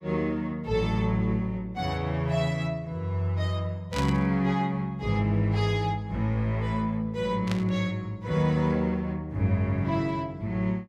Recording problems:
burst of static; at 4 s and at 7.5 s; peak -3 dB vs average level

